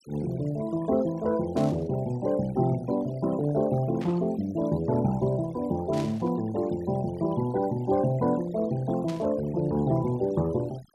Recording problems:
denoising artefacts; signal-to-artefact ratio 20 dB
static burst; 4 times, first at 1.5 s; peak -11 dB vs average level

